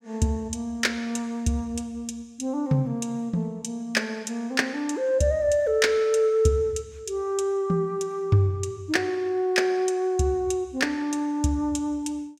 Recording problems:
none

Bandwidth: 16 kHz